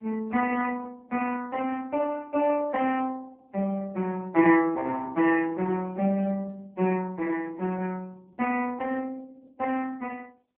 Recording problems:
telephone audio; 220 Hz to 3.1 kHz, AMR-NB

